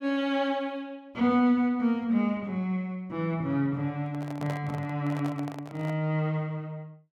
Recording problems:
microphone handling noise; from 4 to 6 s; peak -6 dB vs average level

